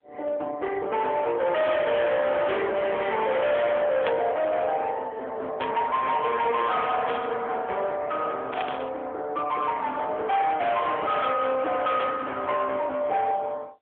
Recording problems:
telephone audio; 340 Hz to 3.8 kHz, AMR-NB
distortion; hard clipping, uneven, signal-to-distortion ratio 7 dB
static burst; 5 times, first at 4 s; peak -3 dB vs average level

